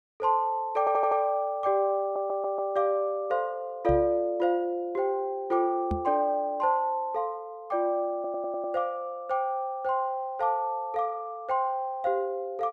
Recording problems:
stutter; at 1 s, at 2 s and at 8 s
knock on the microphone; at 4 s and at 6 s; peak 0 dB vs average level

